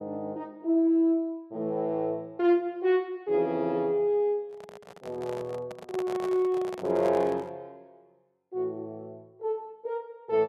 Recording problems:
handling noise; from 4.5 to 7.5 s; peak -6 dB vs average level

